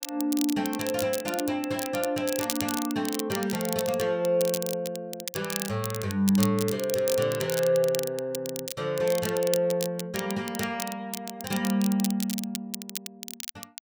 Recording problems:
crackling; vinyl, SNR 8 dB

